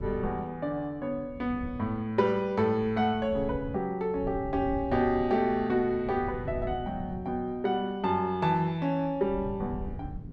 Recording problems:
wind noise; below 150 Hz, SNR 13 dB

